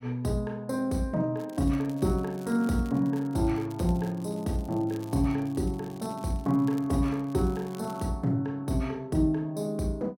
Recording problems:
crackling; from 1.5 to 8 s; loose cable, SNR 25 dB

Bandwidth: 16.5 kHz